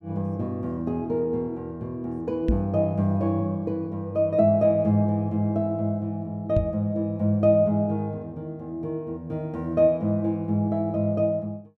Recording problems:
knock on the microphone; at 2.5 s and at 6.5 s; peak +5 dB vs average level

